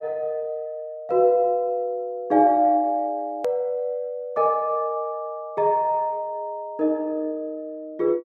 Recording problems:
hard cut with a click; at 3.5 s

